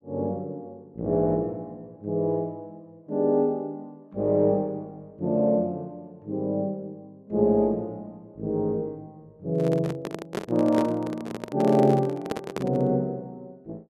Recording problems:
microphone handling noise; from 9.5 to 13 s; peak 0 dB vs average level

